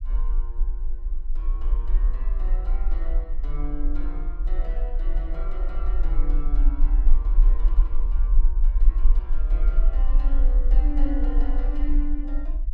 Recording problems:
low-frequency rumble; below 40 Hz, SNR -13 dB

